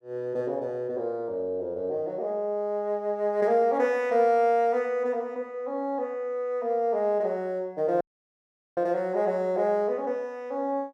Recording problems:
dropout; at 8 s for 1 s

